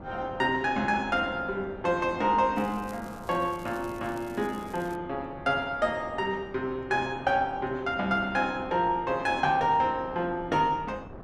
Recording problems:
wind noise; below 630 Hz, SNR 17 dB
crackling; from 2.5 to 5 s; loose cable, SNR 25 dB

